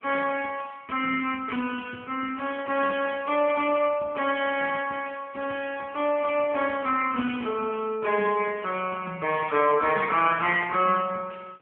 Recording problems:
phone line; 220 Hz to 3 kHz, AMR-NB

